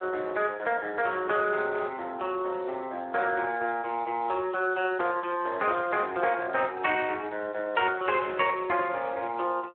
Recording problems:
telephone audio; 280 Hz to 3.3 kHz, Speex

